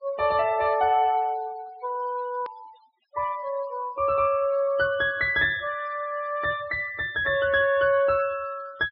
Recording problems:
low-pass filter; nothing above 5.5 kHz
noise reduction artefacts; signal-to-artefact ratio 22 dB
edit click; at 2.5 s

